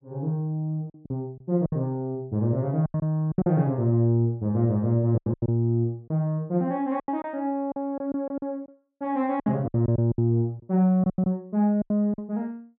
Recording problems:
lost packets; 11% of the sound replaced, filled with silence

